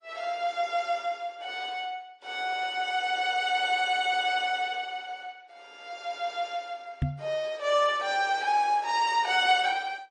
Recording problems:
lossy compression; AAC, then MP3, log-spectral distance 2 dB, nothing above 8.2 kHz
knock on the microphone; at 7 s; peak +2 dB vs average level

